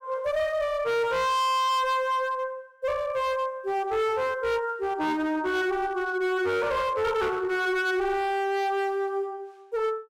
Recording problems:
distortion; hard clipping, uneven, signal-to-distortion ratio 7 dB

